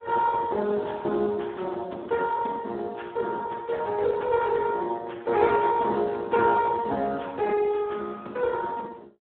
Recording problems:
phone line; 260 Hz to 2.1 kHz, Speex

